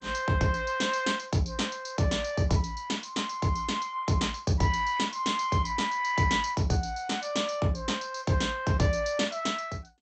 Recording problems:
lossy compression; MP2, log-spectral distance 6 dB, nothing above 7.8 kHz

